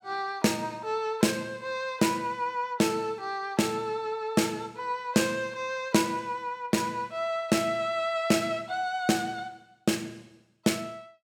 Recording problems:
none

